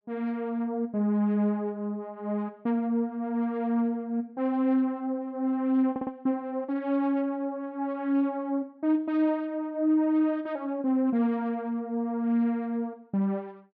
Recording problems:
audio stuttering; at 6 s

